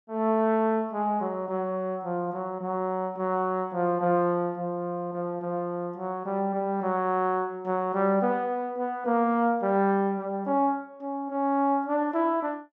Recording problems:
none

